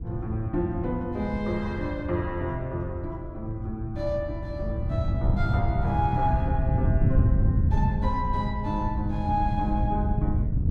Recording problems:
wind noise; below 130 Hz, SNR -2 dB

